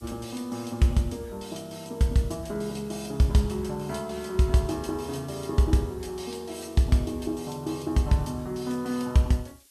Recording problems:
hiss; slope +4 dB per octave, SNR 27 dB

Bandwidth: 13 kHz